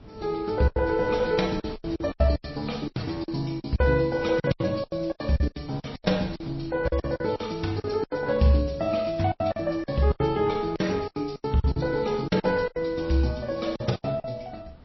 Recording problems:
lossy codec; Vorbis, then MP3, log-spectral distance 5 dB, nothing above 5.7 kHz
wind on the microphone; below 300 Hz, SNR 20 dB
lost packets; 16% of the sound replaced, filled with silence

